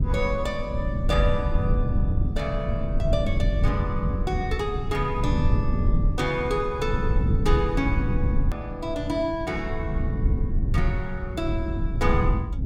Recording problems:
low-frequency rumble; below 120 Hz, SNR -2 dB
hard cut with a click; at 8.5 s

